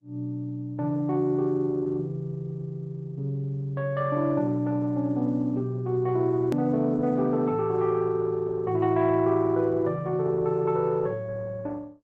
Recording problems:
lossy compression; Opus, log-spectral distance 2 dB, nothing above 13.1 kHz
click at an edit; at 6.5 s

